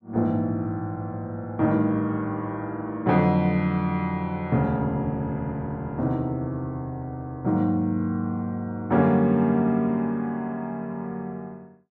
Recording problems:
none

